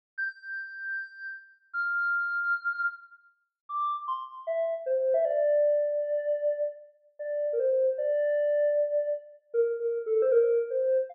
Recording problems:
none

